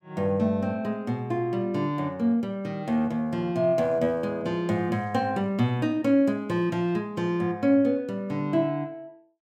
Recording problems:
none

